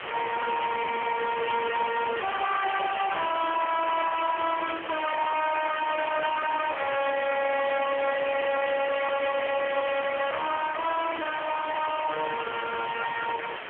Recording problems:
telephone audio; 300 Hz to 3.3 kHz, AMR-NB
distorted audio; soft clipping, signal-to-distortion ratio 6 dB
hiss; SNR 8 dB

